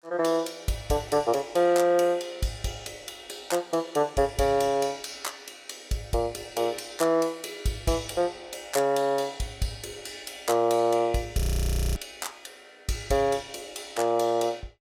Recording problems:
frozen audio; at 11 s for 0.5 s

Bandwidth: 16.5 kHz